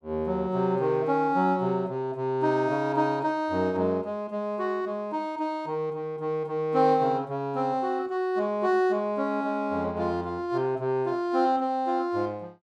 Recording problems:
none

